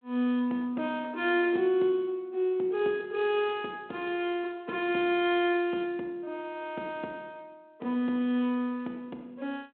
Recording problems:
telephone audio; 190 Hz to 3.4 kHz, G.726

